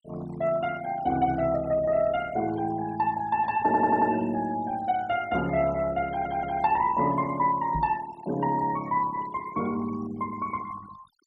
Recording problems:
noise reduction artefacts; signal-to-artefact ratio 18 dB
stutter; at 3.5 s and at 6 s
knock on the microphone; at 8 s; peak -2 dB vs average level

